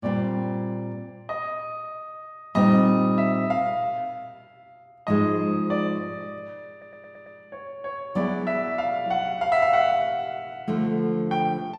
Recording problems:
audio stuttering; at 6.5 s

